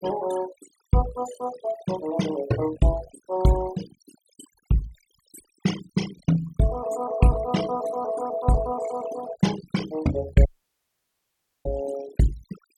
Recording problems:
noise reduction artefacts; signal-to-artefact ratio 13 dB
dropout; at 10 s for 1 s

